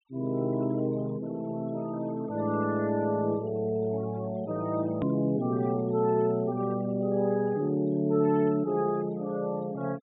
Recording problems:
low-pass filter; nothing above 4 kHz
noise reduction artefacts; signal-to-artefact ratio 24 dB
hard cut with a click; at 5 s

